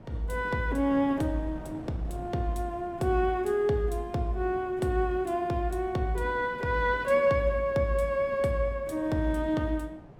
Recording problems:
wind on the microphone; below 460 Hz, SNR 19 dB

